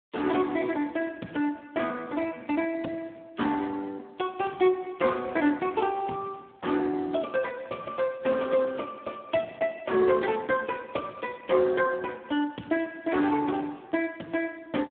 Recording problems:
phone line; 170 Hz to 3.5 kHz, Speex

